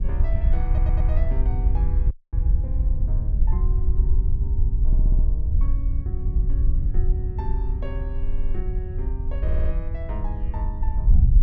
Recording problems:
wind on the microphone; below 62 Hz, SNR -15 dB
stutter; 4 times, first at 0.5 s
audio cutting out; at 2 s

